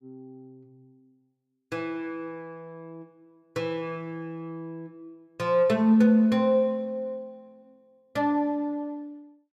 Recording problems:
none

